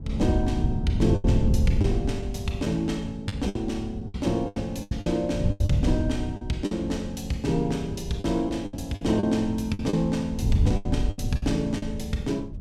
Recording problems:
wind on the microphone; below 130 Hz, SNR 2 dB
packet loss; 10% of the sound replaced, filled with the last packet

